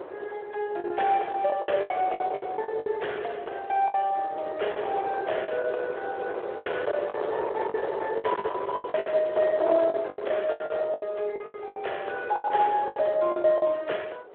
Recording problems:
telephone audio; 370 Hz to 3.4 kHz, Speex
distorted audio; hard clipping, signal-to-distortion ratio 14 dB
wind noise; below 750 Hz, SNR 8 dB
packet loss; 14% of the sound replaced, filled with the last packet

